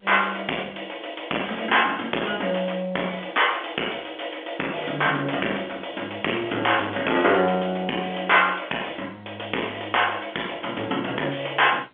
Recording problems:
telephone audio; 240 Hz to 3.4 kHz, G.711
distorted audio; soft clipping, signal-to-distortion ratio 10 dB

